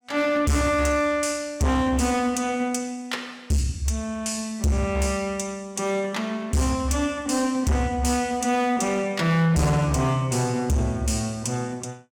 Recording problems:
distorted audio; hard clipping, signal-to-distortion ratio 8 dB

